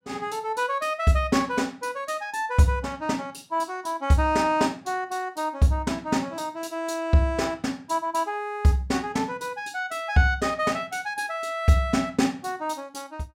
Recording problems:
none

